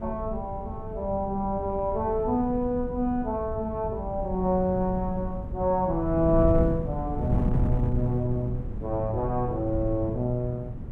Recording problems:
wind on the microphone; below 160 Hz, SNR 6 dB

